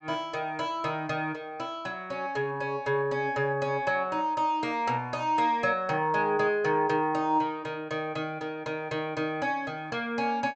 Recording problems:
treble missing; nothing above 8 kHz

